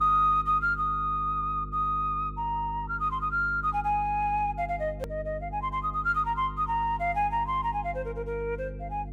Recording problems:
mains hum; 50 Hz, harmonics up to 450 Hz, SNR 12 dB
click at an edit; at 5 s

